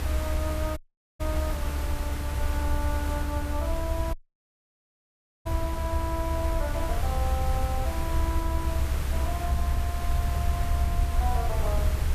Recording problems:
hiss; slope -4 dB per octave, SNR 3 dB
rumble; below 72 Hz, SNR -6 dB
audio cutting out; at 1 s and at 4 s for 1.5 s

